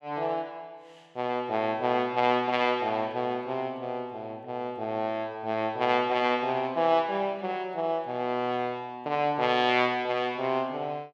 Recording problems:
none

